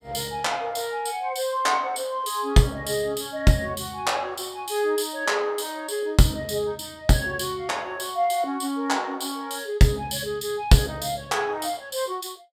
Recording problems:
none

